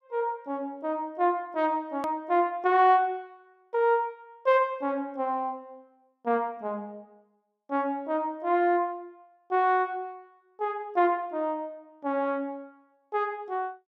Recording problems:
click at an edit; at 2 s

